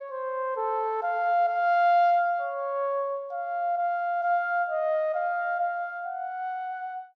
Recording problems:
none

